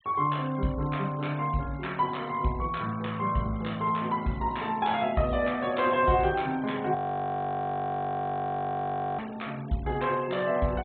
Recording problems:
treble cut off; nothing above 4 kHz
noise reduction artefacts; signal-to-artefact ratio 23 dB
frozen audio; at 7 s for 2 s

